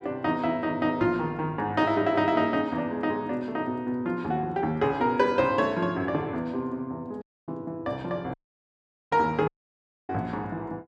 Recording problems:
dropout; at 7 s, at 8.5 s for 1 s and at 9.5 s for 0.5 s

